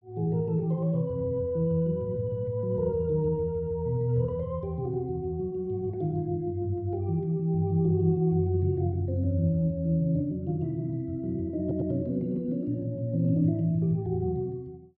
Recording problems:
stutter; at 12 s

